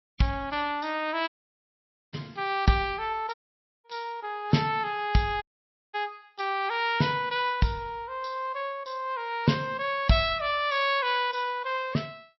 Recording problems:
lossy codec; MP3, log-spectral distance 3 dB, nothing above 5.5 kHz
dropout; at 1.5 s for 1 s, at 3.5 s for 0.5 s and at 5.5 s for 0.5 s

